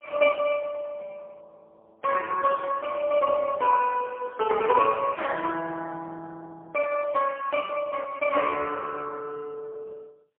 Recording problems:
telephone audio; 260 Hz to 2.9 kHz, AMR-NB, then MP3

